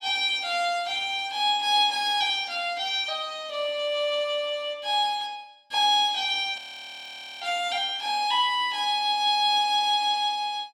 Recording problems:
audio freezing; at 6.5 s for 1 s

